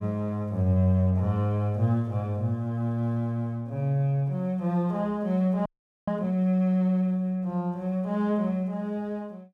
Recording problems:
audio freezing; at 5.5 s

